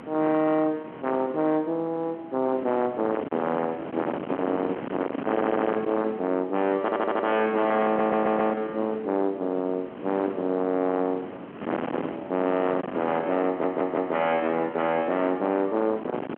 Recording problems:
telephone audio; 170 Hz to 3.4 kHz, G.711
distorted audio; soft clipping, signal-to-distortion ratio 8 dB
wind on the microphone; below 880 Hz, SNR 10 dB
audio stuttering; 4 times, first at 5.5 s

